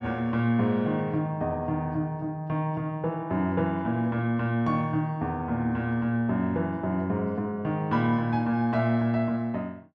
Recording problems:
none

